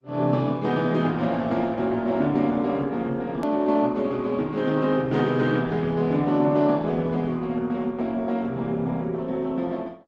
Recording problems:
lossy compression; Opus, log-spectral distance 2 dB, nothing above 13.1 kHz
edit click; at 3.5 s

